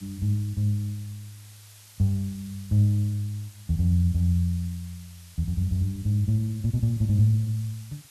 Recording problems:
background hiss; slope +2 dB per octave, SNR 23 dB

